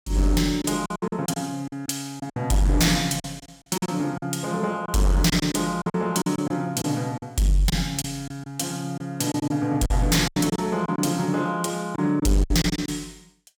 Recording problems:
distortion; hard clipping, signal-to-distortion ratio 10 dB
packet loss; 10% of the sound replaced, filled with silence

